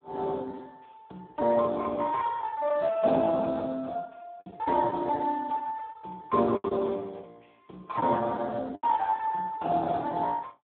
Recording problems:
phone line; 280 Hz to 2.2 kHz, Speex
lost packets; 5% of the sound replaced, filled with the last packet

